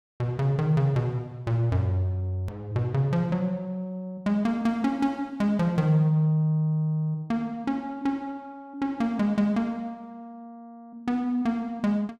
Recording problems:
hard cut with a click; at 2.5 s

